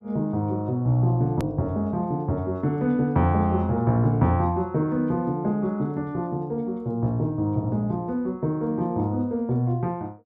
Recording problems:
edit click; at 1.5 s

